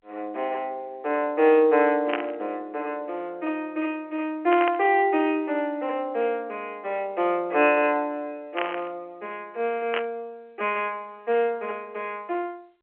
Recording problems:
phone line; 320 Hz to 3.1 kHz, G.711
static burst; 4 times, first at 2 s; peak +1 dB vs average level

